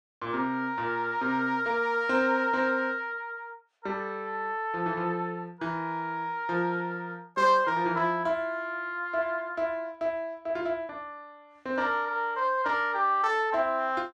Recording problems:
none

